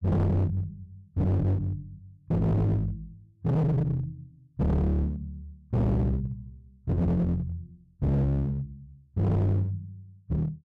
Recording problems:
distorted audio; hard clipping, uneven, signal-to-distortion ratio 5 dB

